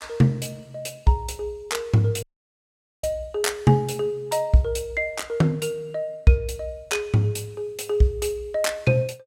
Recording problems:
audio cutting out; at 2 s for 1 s

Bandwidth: 16 kHz